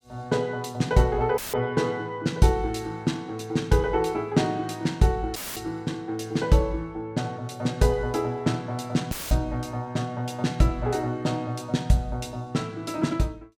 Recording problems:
audio cutting out; at 1.5 s, at 5.5 s and at 9 s; filled with static

